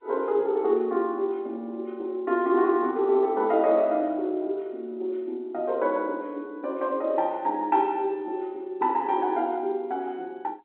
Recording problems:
phone line; 240 Hz to 3.6 kHz, G.711

